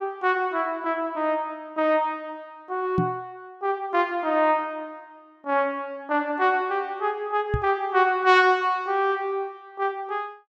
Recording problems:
microphone thump; at 3 s and at 7.5 s; peak +4 dB vs average level

